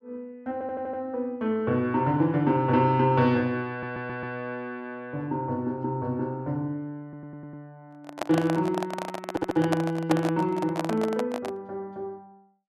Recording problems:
audio stuttering; 4 times, first at 0.5 s
microphone handling noise; from 8 to 12 s; peak +4 dB vs average level

